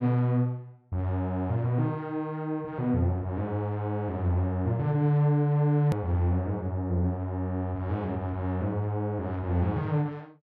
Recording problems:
hard cut with a click; at 6 s

